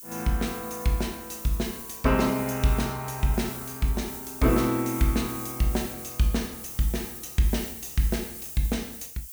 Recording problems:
hiss; slope +6 dB per octave, SNR 9 dB

